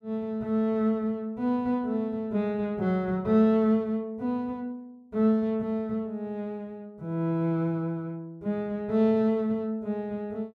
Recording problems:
none

